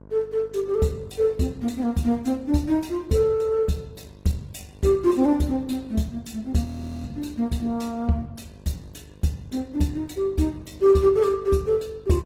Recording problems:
lossy compression; Opus, log-spectral distance 3 dB
electrical hum; 50 Hz, harmonics up to 1.1 kHz, SNR 25 dB
frozen audio; at 6.5 s

